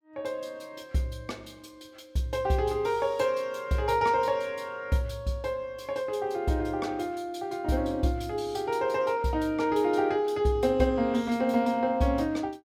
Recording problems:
none

